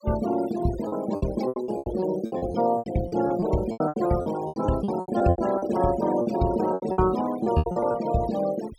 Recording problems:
noise reduction artefacts; signal-to-artefact ratio 14 dB
packet loss; 18% of the sound replaced, filled with repeated pitch periods

